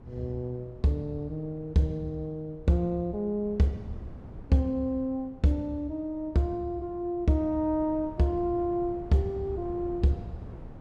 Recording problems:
wind noise; below 220 Hz, SNR 17 dB

